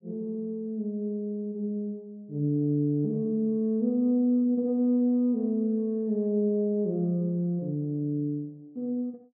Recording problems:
none

